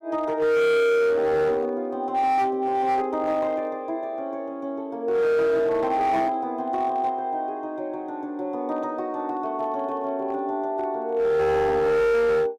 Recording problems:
distorted audio; hard clipping, signal-to-distortion ratio 7 dB

